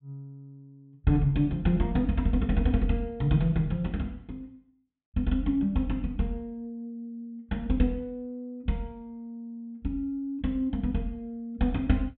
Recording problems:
treble cut off; nothing above 4 kHz

